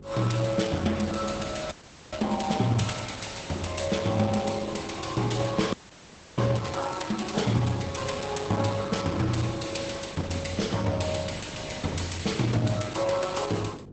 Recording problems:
codec artefacts; Opus, log-spectral distance 7 dB, nothing above 8 kHz
hum; 50 Hz, harmonics up to 500 Hz, SNR 17 dB
wind on the microphone; below 270 Hz, SNR 18 dB
frozen audio; at 1.5 s and at 5.5 s for 0.5 s

